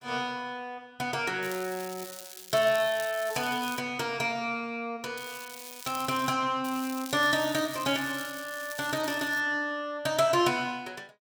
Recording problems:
crackle; from 1.5 to 4 s, from 5 to 6.5 s and from 6.5 to 9.5 s; loose cable, SNR 13 dB

